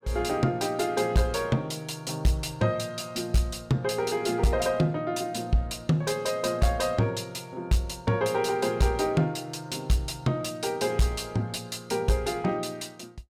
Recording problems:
distortion; soft clipping, signal-to-distortion ratio 11 dB

